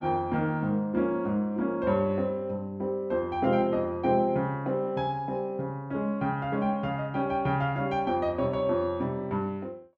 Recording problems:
none

